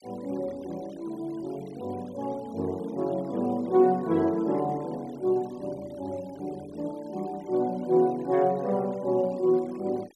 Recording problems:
denoising artefacts; signal-to-artefact ratio 25 dB

